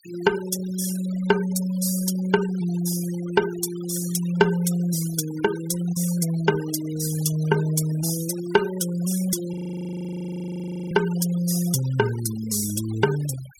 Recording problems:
denoising artefacts; signal-to-artefact ratio 15 dB
audio freezing; at 9.5 s for 1.5 s

